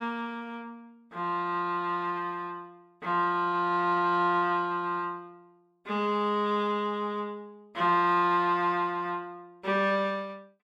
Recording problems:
none

